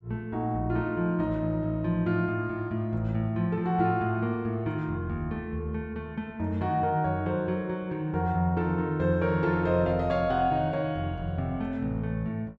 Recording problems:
none

